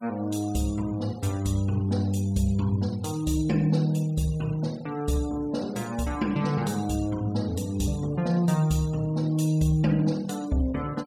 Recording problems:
denoising artefacts; signal-to-artefact ratio 22 dB

